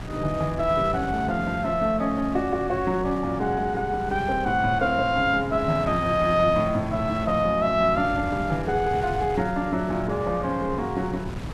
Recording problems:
wind on the microphone; below 300 Hz, SNR 11 dB

